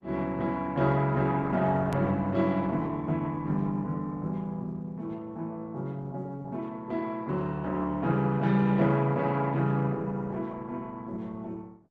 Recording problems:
lossy codec; Opus, log-spectral distance 2 dB, nothing above 13.1 kHz
click at an edit; at 2 s

